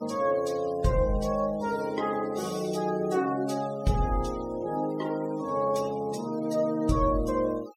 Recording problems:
denoising artefacts; signal-to-artefact ratio 21 dB

